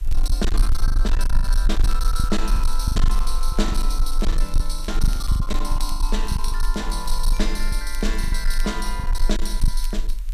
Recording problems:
distortion; hard clipping, signal-to-distortion ratio 11 dB
hiss; slope 0 dB per octave, SNR 23 dB
rumble; below 36 Hz, strongest tone 24 Hz, SNR -4 dB
crackling; vinyl, SNR 19 dB
lost packets; 12% of the sound replaced, filled with the last packet

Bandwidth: 14.5 kHz